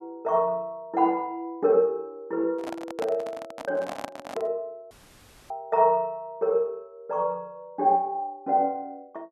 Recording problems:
handling noise; from 2.5 to 4.5 s; peak -3 dB vs average level
audio cutting out; at 5 s for 0.5 s

